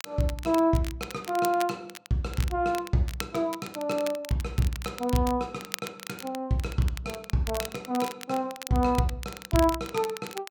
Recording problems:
crackle; vinyl, SNR 12 dB

